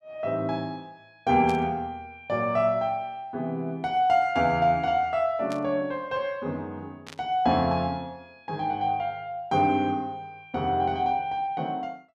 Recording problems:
burst of static; at 1.5 s, at 5.5 s and at 7 s; peak -10 dB vs average level

